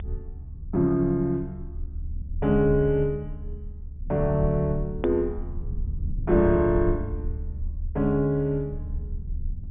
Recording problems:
treble missing; nothing above 3.5 kHz
rumble; below 74 Hz, SNR 9 dB
click at an edit; at 5 s

